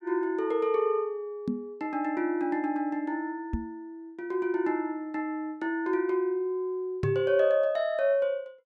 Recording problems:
microphone bump; at 1.5 s, at 3.5 s and at 7 s; peak +2 dB vs average level

